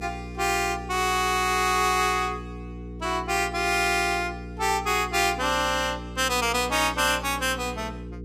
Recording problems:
hum; 60 Hz, harmonics up to 480 Hz, SNR 14 dB

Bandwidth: 15.5 kHz